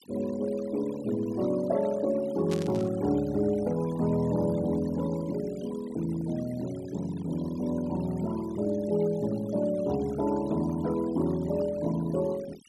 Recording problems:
noise reduction artefacts; signal-to-artefact ratio 19 dB
static burst; at 2.5 s; peak -6 dB vs average level

